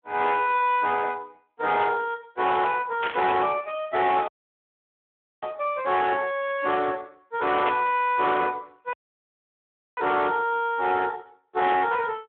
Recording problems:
phone line; 300 Hz to 3.5 kHz, Speex
distorted audio; hard clipping, signal-to-distortion ratio 10 dB
static burst; at 3 s and at 7.5 s; peak -2 dB vs average level
audio cutting out; at 4.5 s for 1 s and at 9 s for 1 s

